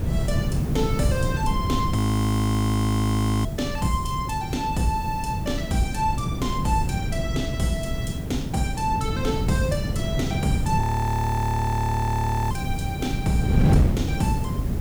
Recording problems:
hiss; slope +7 dB per octave, SNR 20 dB
wind noise; below 200 Hz, SNR -1 dB
audio freezing; at 2 s for 1.5 s and at 11 s for 1.5 s

